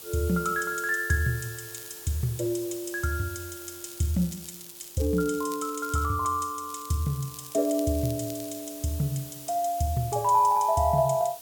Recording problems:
background hiss; SNR 14 dB
crackle; at 1.5 s, from 3.5 to 6 s and from 6.5 to 8.5 s; loose cable, SNR 18 dB

